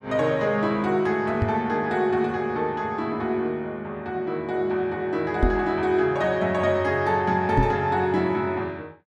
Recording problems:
microphone thump; at 1.5 s, at 5.5 s and at 7.5 s; peak +5 dB vs average level

